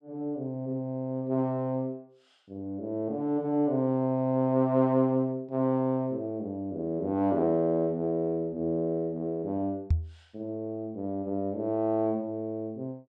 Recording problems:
knock on the microphone; at 10 s; peak +7 dB vs average level

